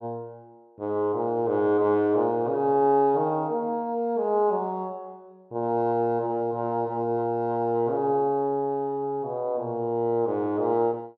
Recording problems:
none

